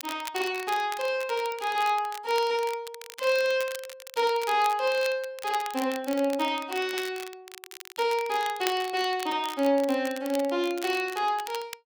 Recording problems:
crackling; vinyl, SNR 14 dB

